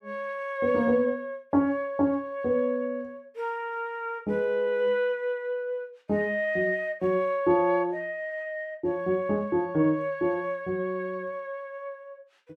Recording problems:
none

